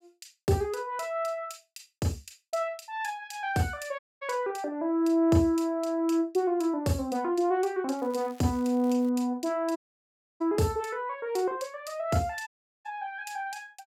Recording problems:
audio cutting out; at 4 s, at 10 s for 0.5 s and at 12 s
crackle; from 8 to 9 s; loose cable, SNR 26 dB

